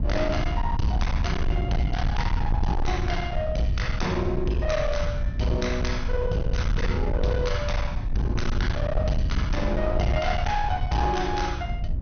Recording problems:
treble cut off; nothing above 6.3 kHz
distortion; hard clipping, uneven, signal-to-distortion ratio 8 dB
hum; 60 Hz, harmonics up to 660 Hz, SNR 22 dB
low-frequency rumble; below 94 Hz, SNR 1 dB

